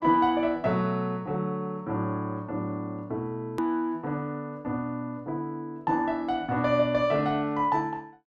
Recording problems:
click at an edit; at 3.5 s

